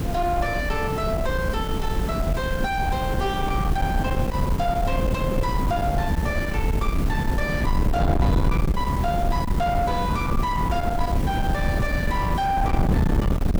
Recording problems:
distortion; soft clipping, signal-to-distortion ratio 7 dB
background hiss; slope -5 dB per octave, SNR 9 dB
wind on the microphone; below 270 Hz, SNR -1 dB

